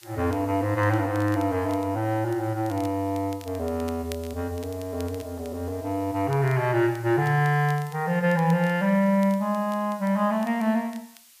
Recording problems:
background hiss; slope +4 dB per octave, SNR 25 dB
crackle; vinyl, SNR 25 dB

